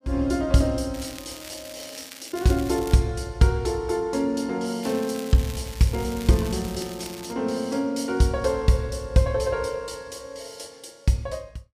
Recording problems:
crackle; from 1 to 3 s and from 5 to 7.5 s; loose cable, SNR 16 dB

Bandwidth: 15 kHz